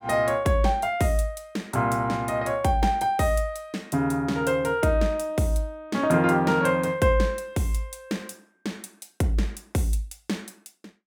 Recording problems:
none

